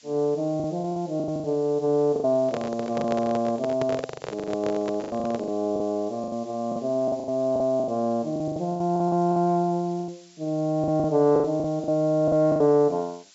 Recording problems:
treble missing; nothing above 8 kHz
hiss; slope +4 dB per octave, SNR 27 dB
packet loss; 14% of the sound replaced, filled with the last packet
microphone handling noise; from 2.5 to 5.5 s; peak -2 dB vs average level

